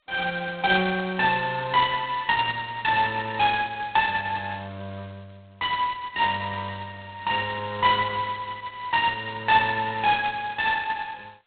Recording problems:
phone line; 220 Hz to 3.9 kHz, G.726

